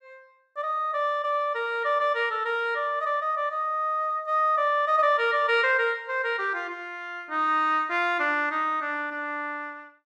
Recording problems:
none

